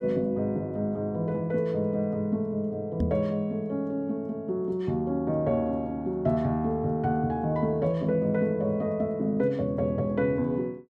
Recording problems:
knock on the microphone; at 3 s; peak +4 dB vs average level

